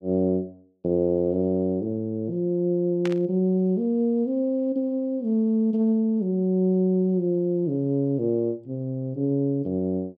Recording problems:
static burst; at 3 s; peak -7 dB vs average level

